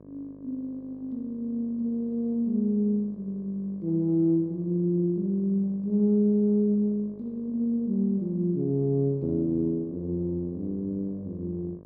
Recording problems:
hum; 50 Hz, harmonics up to 1.2 kHz, SNR 23 dB

